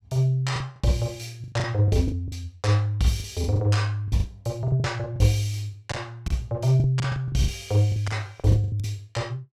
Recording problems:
packet loss; 13% of the sound replaced, filled with the last packet

